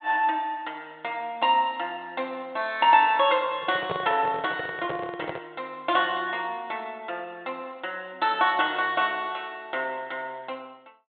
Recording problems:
low-pass filter; nothing above 4 kHz
handling noise; from 3.5 to 5.5 s; peak -1 dB vs average level

